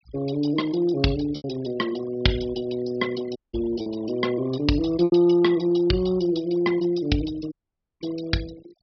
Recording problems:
low-pass filter; nothing above 5.5 kHz
noise reduction artefacts; signal-to-artefact ratio 18 dB
packet loss; 3% of the sound replaced, filled with repeated pitch periods
dropout; at 3.5 s and at 7.5 s

